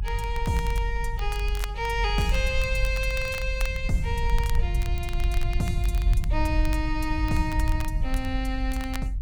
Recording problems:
rumble; below 64 Hz, SNR -1 dB
crackle; vinyl, SNR 14 dB

